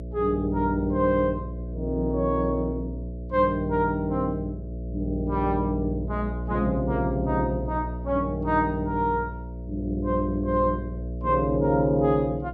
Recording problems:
electrical hum; 60 Hz, harmonics up to 660 Hz, SNR 7 dB

